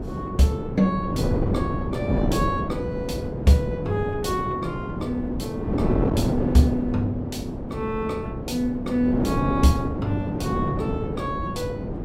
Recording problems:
wind noise; below 380 Hz, SNR 2 dB

